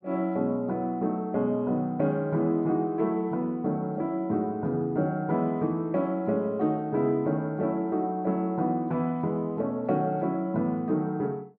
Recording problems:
none

